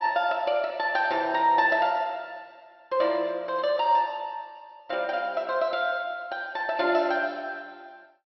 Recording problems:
low-pass filter; nothing above 5.5 kHz

